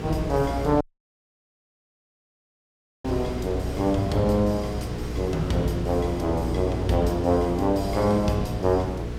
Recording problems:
electrical hum; 60 Hz, harmonics up to 480 Hz, SNR 8 dB
wind on the microphone; below 450 Hz, SNR 12 dB
dropout; at 1 s for 2 s

